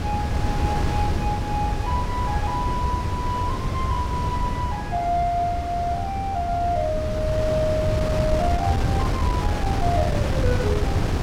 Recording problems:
wind on the microphone; below 240 Hz, SNR -1 dB

